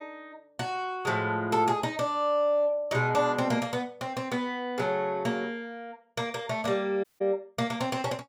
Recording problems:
dropout; at 7 s

